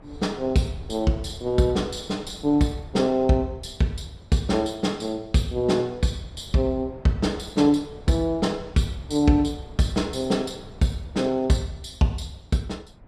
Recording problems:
wind noise; below 310 Hz, SNR 22 dB

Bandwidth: 13 kHz